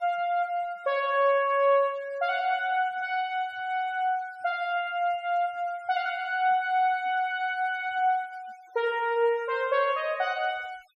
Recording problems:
denoising artefacts; signal-to-artefact ratio 28 dB

